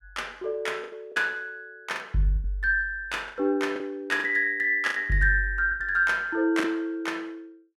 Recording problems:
lost packets; 8% of the sound replaced, filled with the last packet

